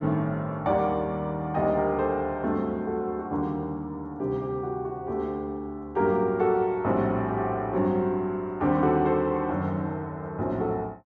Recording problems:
none

